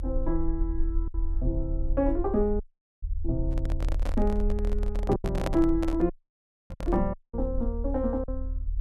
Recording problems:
low-frequency rumble; below 44 Hz, SNR 3 dB
lost packets; 4% of the sound replaced, filled with silence
audio cutting out; at 2.5 s, at 6 s for 0.5 s and at 7 s
handling noise; from 3.5 to 7 s; peak +3 dB vs average level

